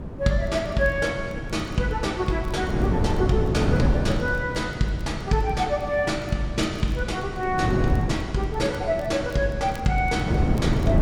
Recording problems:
wind noise; below 280 Hz, SNR 3 dB
crackle; vinyl, SNR 30 dB

